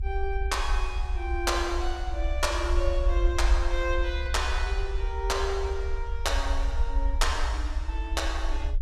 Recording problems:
rumble; below 62 Hz, SNR 0 dB

